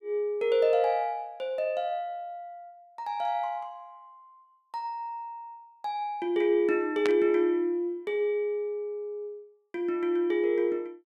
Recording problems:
burst of static; at 7 s; peak -1 dB vs average level

